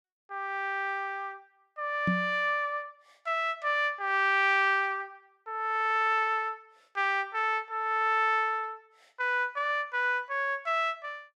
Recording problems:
knock on the microphone; at 2 s; peak +2 dB vs average level

